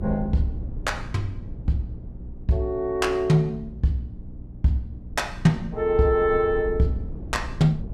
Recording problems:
hum; 60 Hz, harmonics up to 300 Hz, SNR 18 dB
rumble; below 110 Hz, SNR 14 dB

